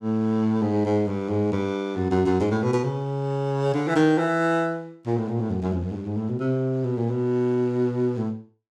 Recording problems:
none

